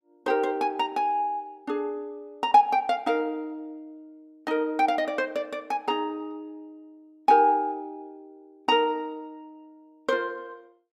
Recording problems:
none

